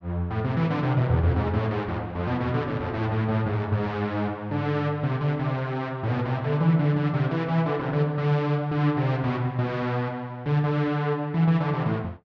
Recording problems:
none

